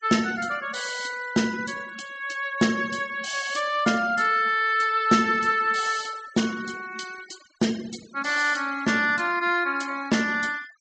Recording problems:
treble missing; nothing above 8 kHz
noise reduction artefacts; signal-to-artefact ratio 19 dB

